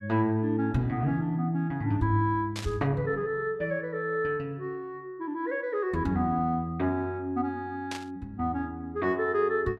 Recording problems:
static burst; at 2.5 s and at 8 s; peak -4 dB vs average level

